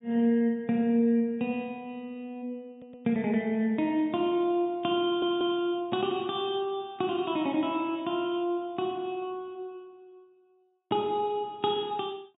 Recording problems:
low-pass filter; nothing above 4 kHz
stutter; at 2.5 s and at 5 s

